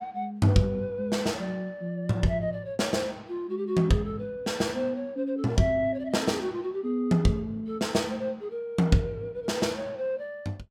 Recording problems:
none

